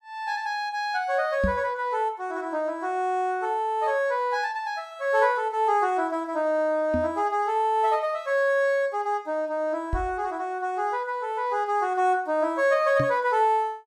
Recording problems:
microphone bump; 4 times, first at 1.5 s; peak +2 dB vs average level

